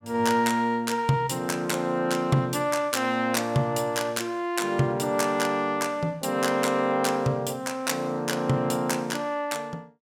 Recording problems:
none

